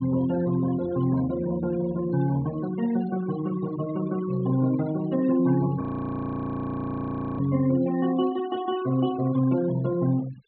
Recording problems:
treble missing; nothing above 4.2 kHz
noise reduction artefacts; signal-to-artefact ratio 18 dB
audio freezing; at 6 s for 1.5 s

